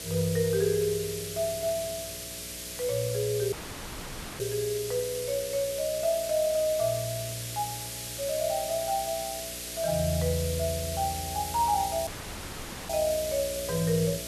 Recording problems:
electrical hum; 60 Hz, harmonics up to 660 Hz, SNR 17 dB
hiss; SNR 6 dB
dropout; at 3.5 s for 1 s and at 12 s for 1 s

